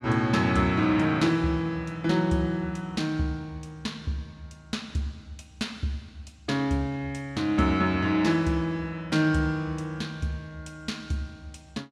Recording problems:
none

